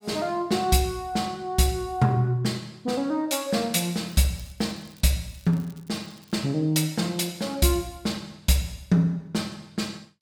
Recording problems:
crackling; from 4 to 6.5 s; loose cable, SNR 28 dB

